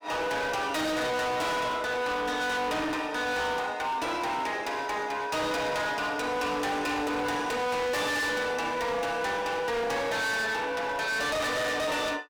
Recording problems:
distorted audio; hard clipping, signal-to-distortion ratio 6 dB

